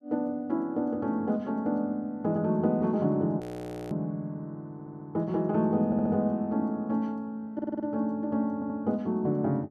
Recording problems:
frozen audio; at 3.5 s for 0.5 s
stutter; 4 times, first at 4.5 s

